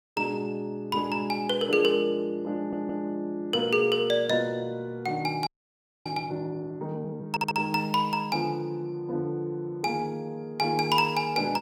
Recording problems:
stutter; at 2.5 s and at 7.5 s
frozen audio; at 5.5 s for 0.5 s

